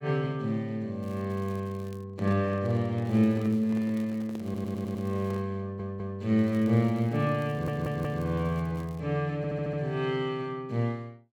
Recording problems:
crackling; from 1 to 2 s, from 3 to 5.5 s and from 6.5 to 9 s; loose cable, SNR 28 dB
microphone handling noise; from 2 to 5.5 s; peak -9 dB vs average level
stutter; 4 times, first at 4.5 s

